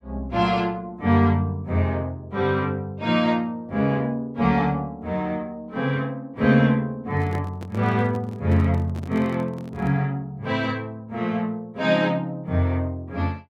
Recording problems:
handling noise; from 7 to 10 s; peak -7 dB vs average level

